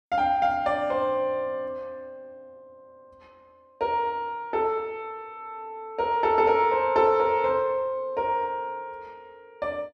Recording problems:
none

